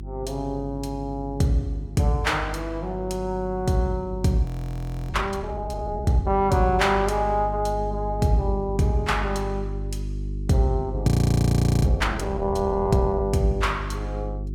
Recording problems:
hum; 50 Hz, harmonics up to 400 Hz, SNR 8 dB
audio freezing; at 4.5 s for 0.5 s and at 11 s for 1 s

